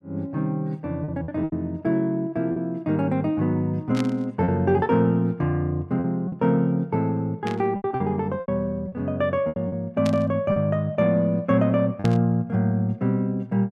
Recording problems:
lost packets; 6% of the sound replaced, filled with repeated pitch periods
static burst; 4 times, first at 4 s; peak -6 dB vs average level

